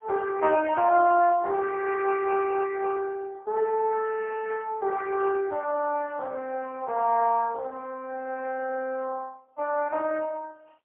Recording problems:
telephone audio; 340 Hz to 3.1 kHz, AMR-NB, then MP3

